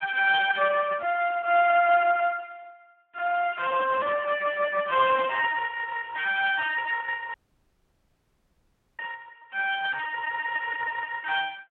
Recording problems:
telephone audio; 950 Hz to 2.8 kHz, Speex
dropout; at 7.5 s for 1.5 s

